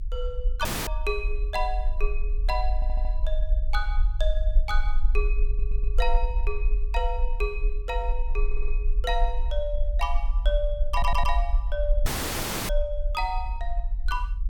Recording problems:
rumble; below 44 Hz, SNR -3 dB
audio cutting out; at 0.5 s and at 12 s for 0.5 s
audio stuttering; 4 times, first at 3 s

